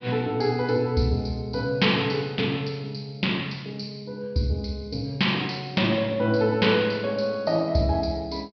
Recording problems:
low-pass filter; nothing above 5.5 kHz

